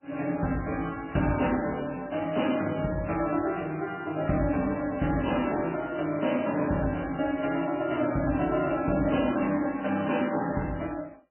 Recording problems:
lossy codec; MP3, log-spectral distance 7 dB, nothing above 3 kHz

